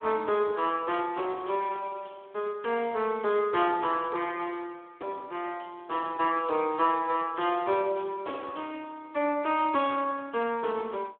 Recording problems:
phone line; 280 Hz to 3.4 kHz, Speex

